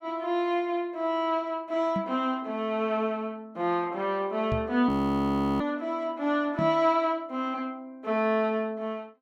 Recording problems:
microphone bump; at 2 s, at 4.5 s and at 6.5 s; peak 0 dB vs average level
audio freezing; at 5 s for 0.5 s

